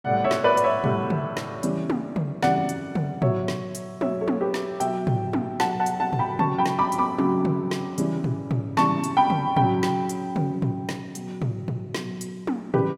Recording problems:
none

